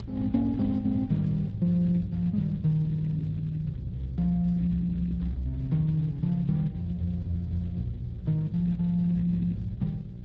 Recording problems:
lossy compression; Speex, log-spectral distance 2 dB, nothing above 13.1 kHz
hum; 60 Hz, harmonics up to 600 Hz, SNR 13 dB
rumble; below 120 Hz, SNR 16 dB

